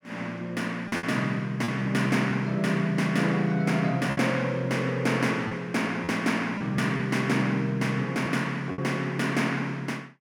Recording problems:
packet loss; 4% of the sound replaced, filled with repeated pitch periods

